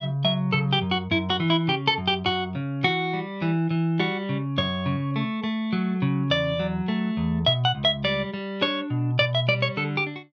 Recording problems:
none

